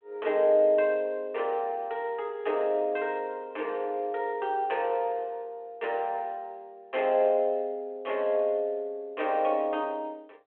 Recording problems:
phone line; 300 Hz to 3.3 kHz, G.726

